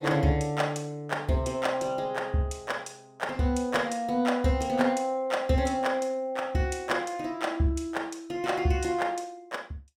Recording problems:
none

